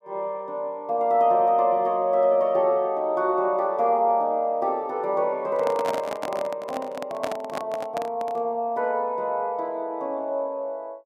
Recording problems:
handling noise; from 5.5 to 8.5 s; peak -1 dB vs average level

